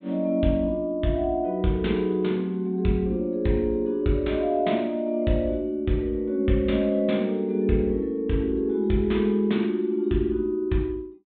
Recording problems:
treble missing; nothing above 4 kHz

